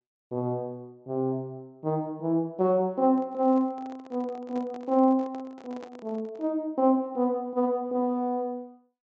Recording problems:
treble missing; nothing above 8 kHz
handling noise; from 3 to 6.5 s; peak -13 dB vs average level

